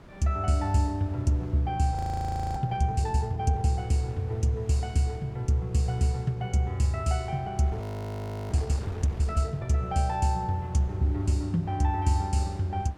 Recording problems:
wind noise; below 810 Hz, SNR 20 dB
frozen audio; at 2 s for 0.5 s and at 8 s for 0.5 s

